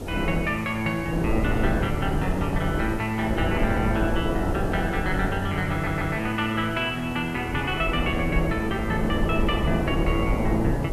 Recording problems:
hiss; slope +2 dB per octave, SNR 22 dB
wind on the microphone; below 410 Hz, SNR 2 dB
stutter; at 5.5 s

